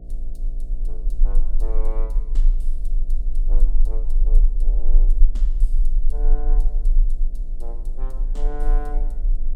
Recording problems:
hum; 60 Hz, harmonics up to 720 Hz, SNR 6 dB
low-frequency rumble; below 32 Hz, strongest tone 24 Hz, SNR -17 dB

